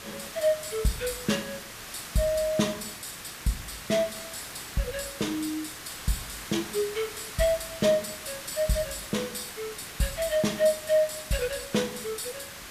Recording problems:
hiss; slope -1 dB per octave, SNR 10 dB

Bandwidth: 14.5 kHz